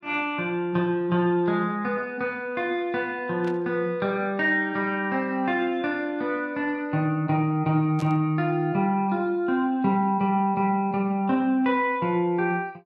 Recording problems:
static burst; at 3.5 s and at 8 s; peak -13 dB vs average level

